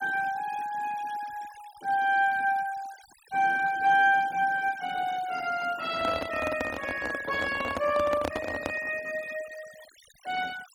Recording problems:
noise reduction artefacts; signal-to-artefact ratio 19 dB
microphone handling noise; from 6 to 9 s; peak 0 dB vs average level

